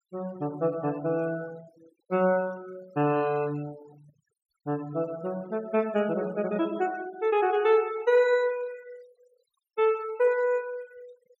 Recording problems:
denoising artefacts; signal-to-artefact ratio 23 dB

